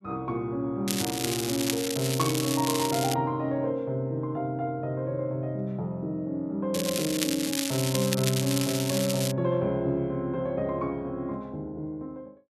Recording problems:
crackle; from 1 to 3 s and from 6.5 to 9.5 s; loose cable, SNR 2 dB

